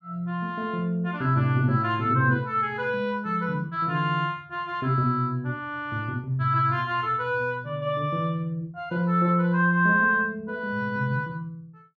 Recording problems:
none

